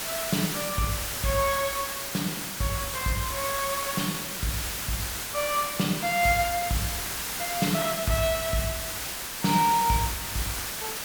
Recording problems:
background hiss; slope 0 dB per octave, SNR 2 dB

